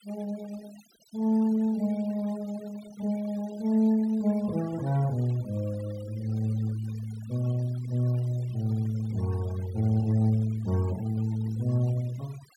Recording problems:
denoising artefacts; signal-to-artefact ratio 22 dB

